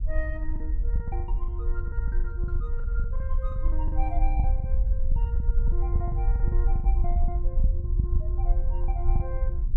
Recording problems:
low-frequency rumble; below 54 Hz, SNR -13 dB
lost packets; 15% of the sound replaced, filled with the last packet

